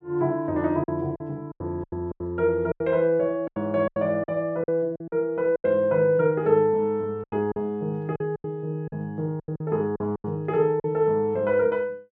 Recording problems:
lost packets; 11% of the sound replaced, filled with silence

